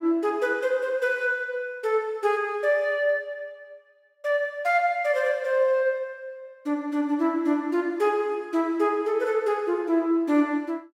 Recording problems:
none

